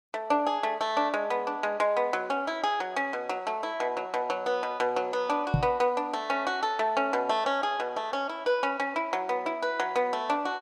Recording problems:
microphone thump; at 5.5 s; peak +7 dB vs average level

